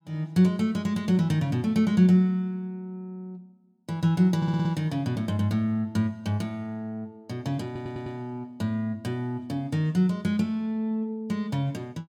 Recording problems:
audio stuttering; at 4.5 s and at 7.5 s

